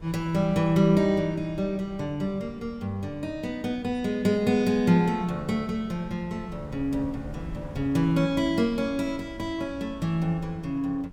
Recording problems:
wind noise; below 140 Hz, SNR 19 dB

